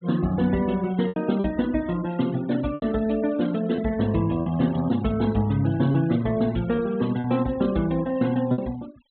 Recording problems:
treble missing; nothing above 4 kHz
noise reduction artefacts; signal-to-artefact ratio 20 dB
lost packets; 4% of the sound replaced, filled with repeated pitch periods

